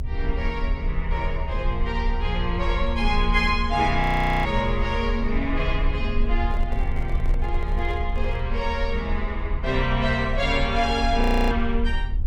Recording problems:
low-frequency rumble; below 68 Hz, strongest tone 30 Hz, SNR 3 dB
frozen audio; at 4 s and at 11 s
handling noise; from 6.5 to 8.5 s; peak -11 dB vs average level

